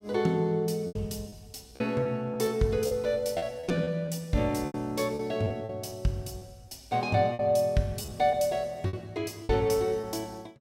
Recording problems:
packet loss; 9% of the sound replaced, filled with repeated pitch periods

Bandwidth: 16 kHz